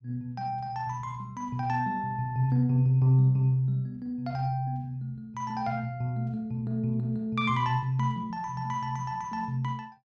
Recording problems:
none

